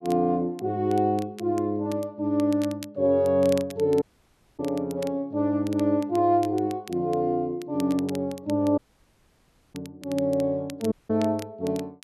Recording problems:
crackling; vinyl, SNR 21 dB
dropout; at 4 s for 0.5 s, at 9 s for 1 s and at 11 s

